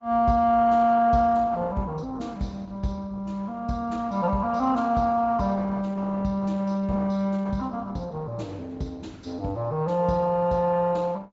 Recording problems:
low-pass filter; nothing above 7.6 kHz
codec artefacts; Opus, log-spectral distance 2 dB

